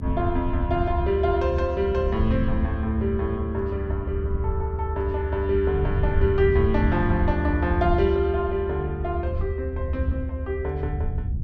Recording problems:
rumble; below 82 Hz, SNR 2 dB

